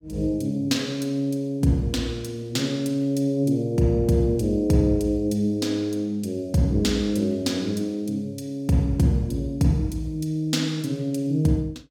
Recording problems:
none

